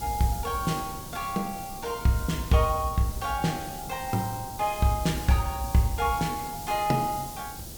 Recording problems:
background hiss; SNR 13 dB
wind on the microphone; below 330 Hz, SNR 16 dB

